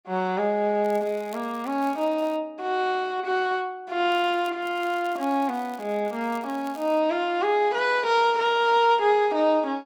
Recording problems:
crackle; from 1 to 2.5 s, at 4 s and from 4.5 to 7 s; loose cable, SNR 26 dB

